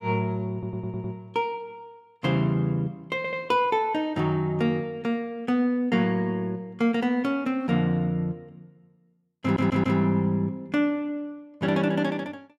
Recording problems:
stutter; at 0.5 s, at 3 s and at 9.5 s

